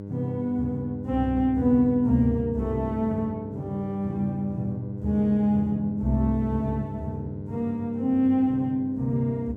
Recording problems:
hum; 50 Hz, harmonics up to 600 Hz, SNR 12 dB

